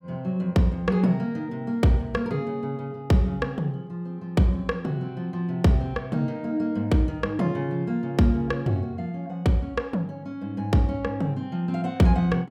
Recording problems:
none

